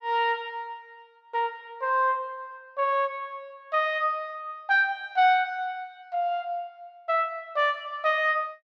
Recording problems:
none

